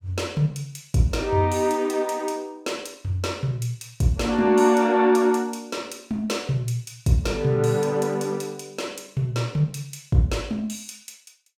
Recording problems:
none

